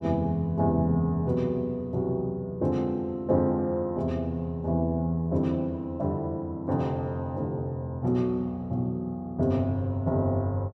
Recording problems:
none

